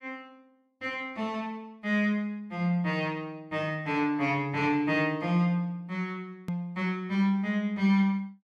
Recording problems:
click at an edit; at 6.5 s

